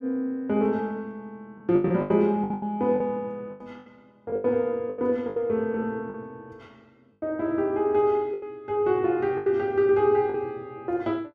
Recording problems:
lost packets; 10% of the sound replaced, filled with the last packet

